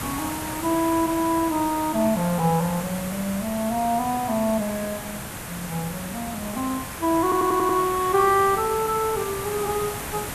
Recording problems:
background hiss; slope -4 dB per octave, SNR 8 dB
stutter; at 7 s

